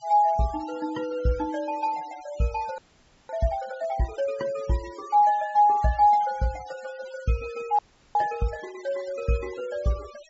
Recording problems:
low-pass filter; nothing above 8 kHz
noise reduction artefacts; signal-to-artefact ratio 21 dB
audio freezing; at 3 s for 0.5 s and at 8 s

